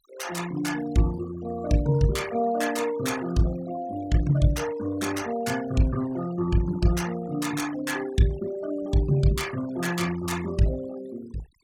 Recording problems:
noise reduction artefacts; signal-to-artefact ratio 17 dB

